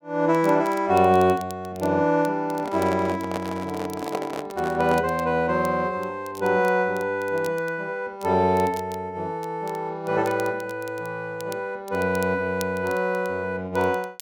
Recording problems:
crackling; vinyl, SNR 22 dB
handling noise; from 2.5 to 5 s; peak -2 dB vs average level

